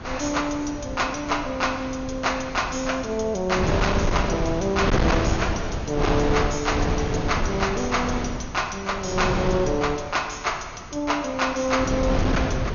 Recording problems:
codec artefacts; MP2, log-spectral distance 7 dB, nothing above 6.7 kHz
distortion; hard clipping, signal-to-distortion ratio 11 dB
wind noise; below 530 Hz, SNR 3 dB

